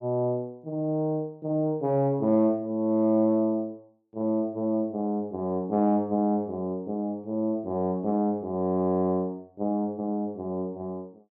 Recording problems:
none

